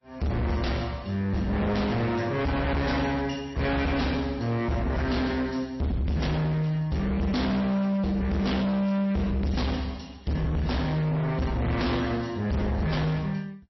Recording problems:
codec artefacts; MP3, log-spectral distance 3 dB, nothing above 5.7 kHz
distorted audio; hard clipping, signal-to-distortion ratio 6 dB

